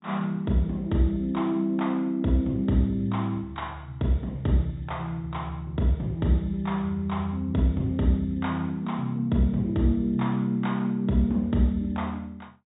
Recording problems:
treble cut off; nothing above 4 kHz

